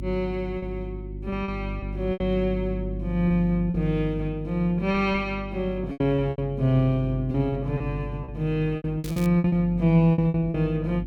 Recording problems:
electrical hum; 50 Hz, harmonics up to 350 Hz, SNR 10 dB
lost packets; 9% of the sound replaced, filled with repeated pitch periods
crackle; at 9 s; loose cable, SNR 18 dB

